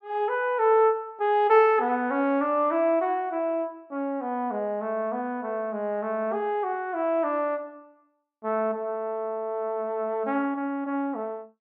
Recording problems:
none

